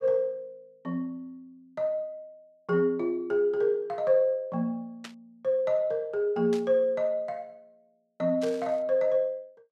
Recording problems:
static burst; at 5 s, at 6.5 s and at 8.5 s; peak -9 dB vs average level

